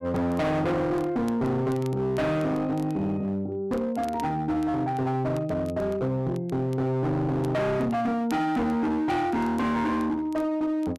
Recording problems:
distorted audio; hard clipping, signal-to-distortion ratio 7 dB
crackle; vinyl, SNR 27 dB

